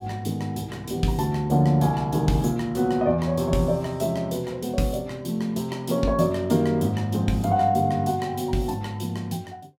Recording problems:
none

